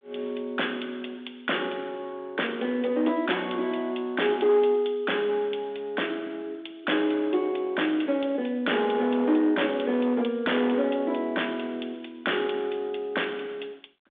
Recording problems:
phone line; 240 Hz to 3.6 kHz, G.726
distorted audio; hard clipping, signal-to-distortion ratio 10 dB

